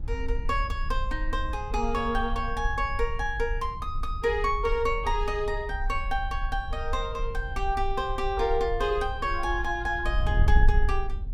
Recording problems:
wind on the microphone; below 58 Hz, SNR 3 dB

